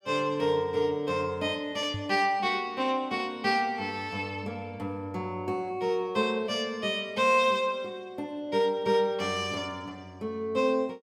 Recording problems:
knock on the microphone; at 2 s; peak -4 dB vs average level

